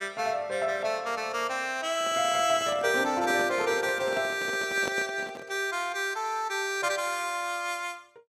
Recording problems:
microphone handling noise; from 2 to 5.5 s; peak -3 dB vs average level

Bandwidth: 15.5 kHz